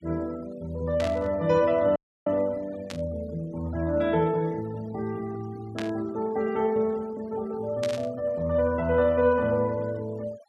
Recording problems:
noise reduction artefacts; signal-to-artefact ratio 24 dB
burst of static; 4 times, first at 1 s; peak -5 dB vs average level
dropout; at 2 s

